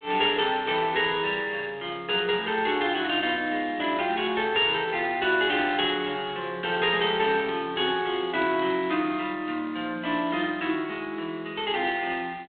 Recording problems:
telephone audio; 240 Hz to 3.9 kHz, G.726

